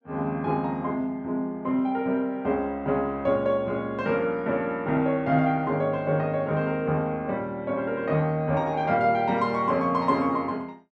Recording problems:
none

